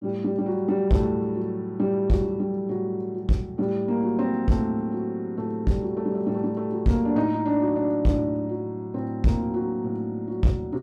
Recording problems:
distorted audio; soft clipping, signal-to-distortion ratio 10 dB

